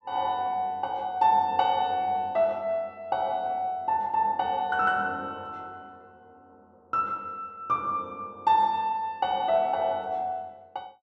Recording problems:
none

